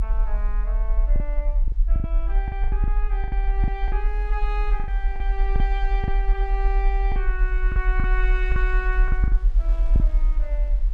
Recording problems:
rumble; below 46 Hz, strongest tone 40 Hz, SNR -9 dB
wind on the microphone; below 1.7 kHz, SNR 21 dB
lost packets; 9% of the sound replaced, filled with the last packet

